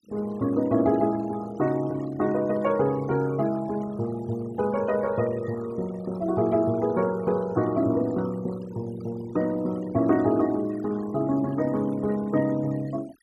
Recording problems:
denoising artefacts; signal-to-artefact ratio 20 dB

